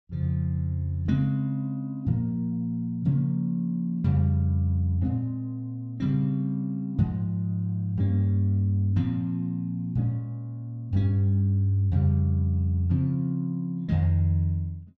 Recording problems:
none

